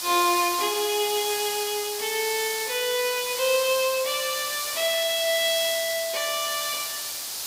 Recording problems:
background hiss; SNR 4 dB

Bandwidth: 15.5 kHz